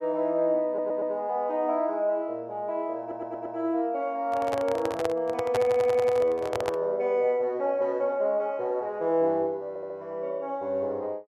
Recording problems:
stutter; 4 times, first at 0.5 s
microphone handling noise; from 4.5 to 7 s; peak +1 dB vs average level

